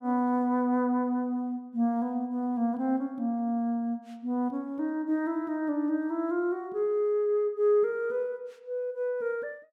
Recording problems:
none

